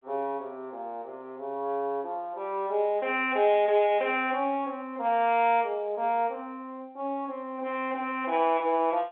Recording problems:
telephone audio; 300 Hz to 3.6 kHz, G.711

